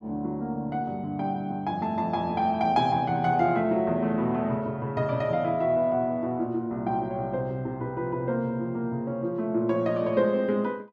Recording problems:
none

